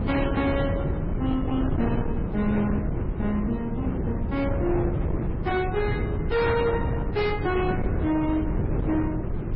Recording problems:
codec artefacts; MP3, then MP3, log-spectral distance 2 dB, nothing above 5.2 kHz
distorted audio; hard clipping, signal-to-distortion ratio 11 dB
wind on the microphone; below 290 Hz, SNR 1 dB

